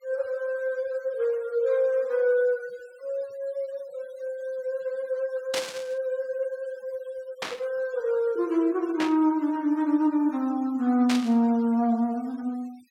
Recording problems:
noise reduction artefacts; signal-to-artefact ratio 26 dB
static burst; 4 times, first at 5.5 s; peak +1 dB vs average level

